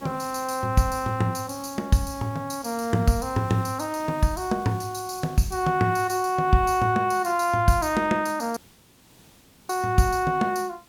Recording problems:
hiss; SNR 25 dB
audio cutting out; at 8.5 s for 1 s

